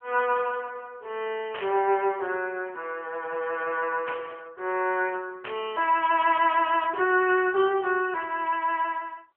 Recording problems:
phone line; 340 Hz to 3.2 kHz, AMR-NB
burst of static; at 1.5 s, at 4 s and at 5.5 s; peak -6 dB vs average level

